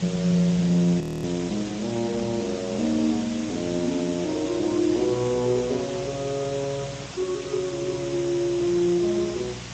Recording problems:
codec artefacts; Speex, log-spectral distance 9 dB, nothing above 13.1 kHz
hum; 60 Hz, harmonics up to 600 Hz, SNR 17 dB
hiss; slope -1 dB per octave, SNR 12 dB
wind noise; below 860 Hz, SNR 25 dB
audio freezing; at 1 s

